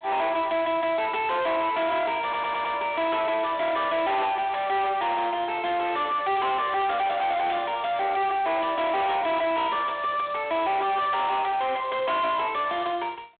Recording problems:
phone line; 240 Hz to 3.5 kHz, G.726
distortion; soft clipping, signal-to-distortion ratio 6 dB
audio stuttering; at 2 s

